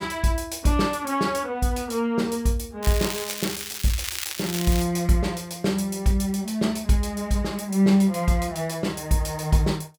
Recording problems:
crackling; from 3 to 5 s; loose cable, SNR 6 dB

